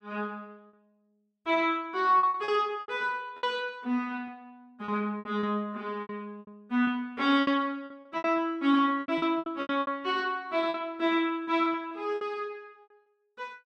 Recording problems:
packet loss; 12% of the sound replaced, filled with repeated pitch periods

